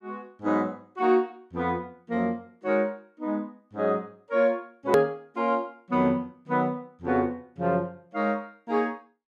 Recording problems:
hard cut with a click; at 5 s

